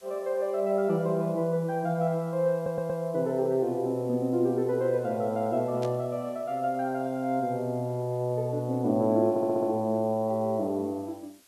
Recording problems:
hiss; slope +1 dB per octave, SNR 29 dB
stutter; at 2.5 s and at 9.5 s
burst of static; at 6 s; peak -12 dB vs average level

